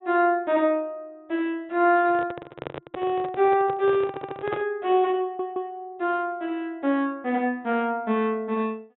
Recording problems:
treble missing; nothing above 3.8 kHz
microphone handling noise; from 2 to 4.5 s; peak -3 dB vs average level
stutter; at 4 s and at 5 s

